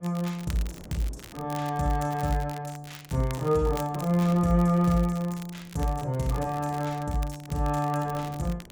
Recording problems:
wind on the microphone; below 470 Hz, SNR 22 dB
crackle; vinyl, SNR 19 dB

